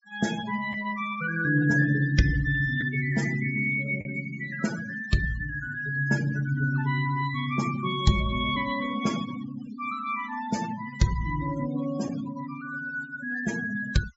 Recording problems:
treble missing; nothing above 8 kHz
noise reduction artefacts; signal-to-artefact ratio 13 dB
packet loss; 0.5% of the sound replaced, filled with the last packet

